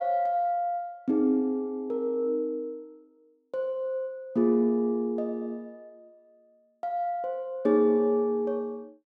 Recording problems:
none

